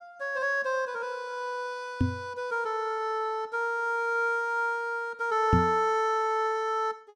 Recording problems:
knock on the microphone; at 2 s and at 5.5 s; peak +8 dB vs average level

